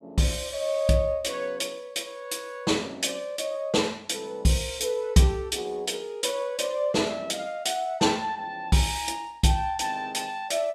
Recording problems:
none

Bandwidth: 14.5 kHz